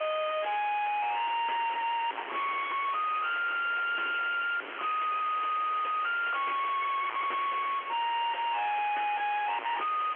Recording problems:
telephone audio; 370 Hz to 2.2 kHz, G.711
distortion; soft clipping, signal-to-distortion ratio 3 dB
background hiss; SNR 12 dB

